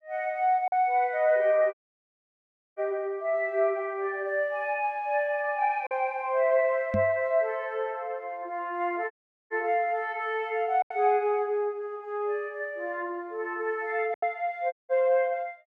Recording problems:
packet loss; 1.7% of the sound replaced, filled with silence
audio cutting out; at 1.5 s for 1 s, at 9 s and at 15 s
microphone bump; at 7 s; peak +1 dB vs average level

